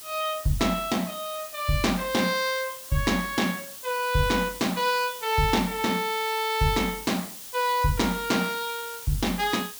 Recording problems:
background hiss; slope +1 dB per octave, SNR 12 dB

